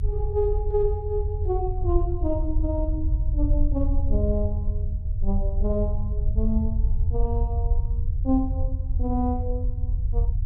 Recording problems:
rumble; below 78 Hz, SNR -2 dB

